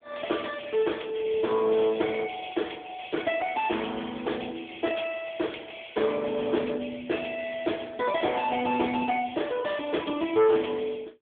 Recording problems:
telephone audio; 220 Hz to 3.5 kHz, AMR-NB
distortion; hard clipping, uneven, signal-to-distortion ratio 11 dB

